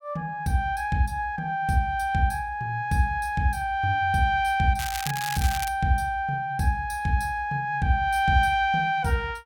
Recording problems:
crackle; at 5 s; loose cable, SNR 9 dB

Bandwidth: 17 kHz